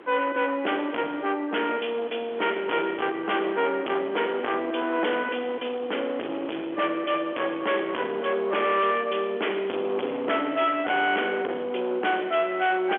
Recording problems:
phone line; 260 Hz to 3.4 kHz, G.711
distortion; soft clipping, signal-to-distortion ratio 4 dB
wind noise; below 1.6 kHz, SNR 16 dB
crackling; from 9.5 to 11 s; loose cable, SNR 29 dB

